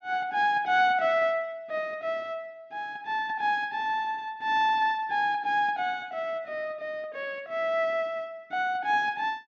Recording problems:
none

